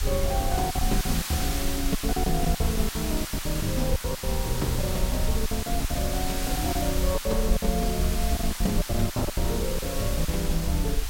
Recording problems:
background hiss; SNR 3 dB
low-frequency rumble; below 56 Hz, SNR 3 dB
packet loss; 13% of the sound replaced, filled with silence

